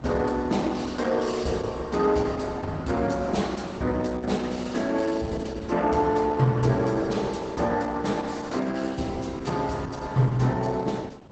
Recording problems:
lossy codec; Opus, log-spectral distance 4 dB, nothing above 8 kHz
wind noise; below 550 Hz, SNR 22 dB

